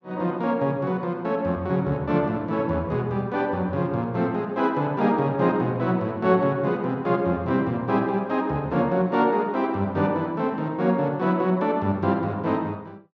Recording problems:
none

